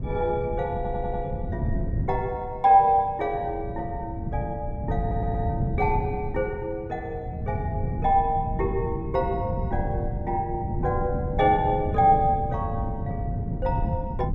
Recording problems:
wind noise; below 160 Hz, SNR 5 dB
audio stuttering; at 1 s and at 5 s

